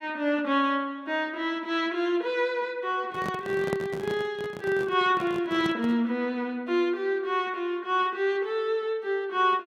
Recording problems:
handling noise; from 3 to 6 s; peak +1 dB vs average level

